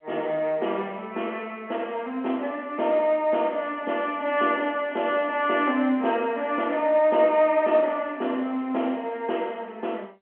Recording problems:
phone line; 240 Hz to 3.2 kHz, G.711

